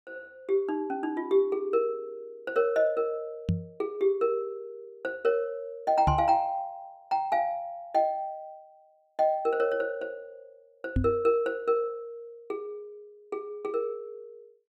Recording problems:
microphone thump; at 3.5 s, at 6 s and at 11 s; peak +5 dB vs average level

